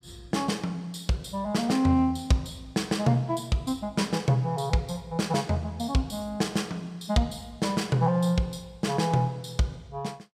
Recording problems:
none

